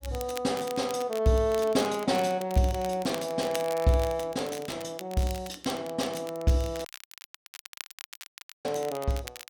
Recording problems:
crackling; vinyl, SNR 15 dB
dropout; at 7 s for 2 s

